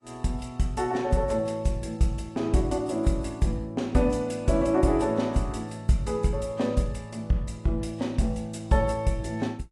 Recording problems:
codec artefacts; AAC, log-spectral distance 2 dB

